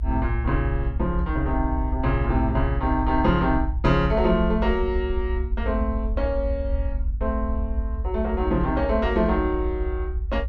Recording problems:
rumble; below 66 Hz, strongest tone 50 Hz, SNR 3 dB

